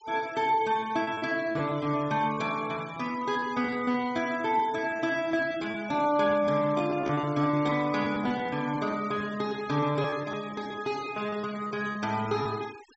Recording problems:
treble missing; nothing above 7.6 kHz
denoising artefacts; signal-to-artefact ratio 19 dB
lost packets; 11% of the sound replaced, filled with repeated pitch periods

